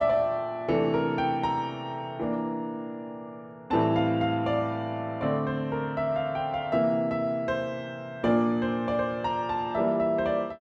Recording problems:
none

